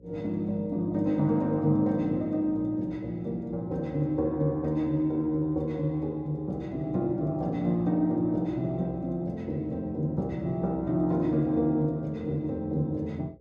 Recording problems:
hum; 60 Hz, harmonics up to 540 Hz, SNR 27 dB

